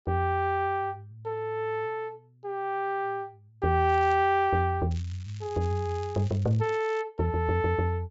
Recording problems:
treble cut off; nothing above 8 kHz
crackle; at 4 s and from 5 to 7 s; loose cable, SNR 24 dB

